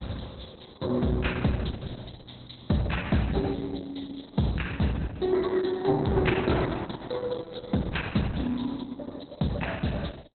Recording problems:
lossy compression; Opus, log-spectral distance 7 dB, nothing above 4.1 kHz

